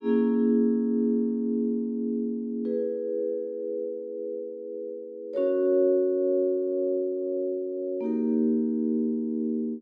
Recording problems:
none

